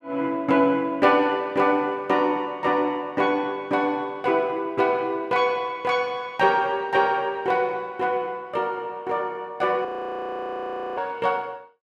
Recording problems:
frozen audio; at 10 s for 1 s

